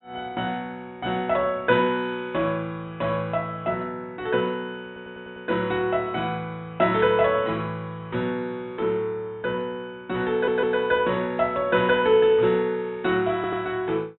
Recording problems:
treble missing; nothing above 3.9 kHz
audio stuttering; at 5 s, at 10 s and at 13 s
burst of static; at 7 s; peak -13 dB vs average level

